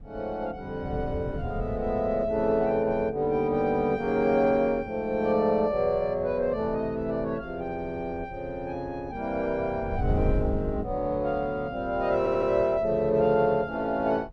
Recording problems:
wind noise; below 120 Hz, SNR 12 dB
stutter; at 12 s

